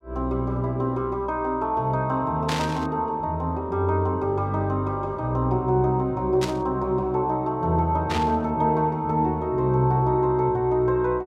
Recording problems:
static burst; at 2.5 s, at 6.5 s and at 8 s; peak -2 dB vs average level

